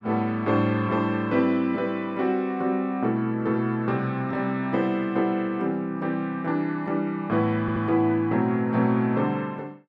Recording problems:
stutter; at 7.5 s

